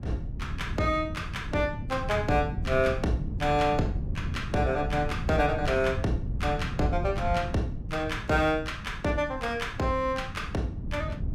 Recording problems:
wind noise; below 150 Hz, SNR 7 dB

